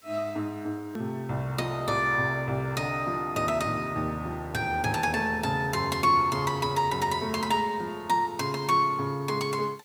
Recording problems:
background hiss; slope -1 dB per octave, SNR 29 dB
hard cut with a click; at 1 s

